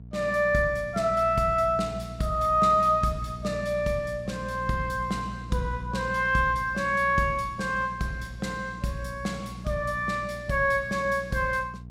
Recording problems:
hum; 60 Hz, harmonics up to 480 Hz, SNR 14 dB

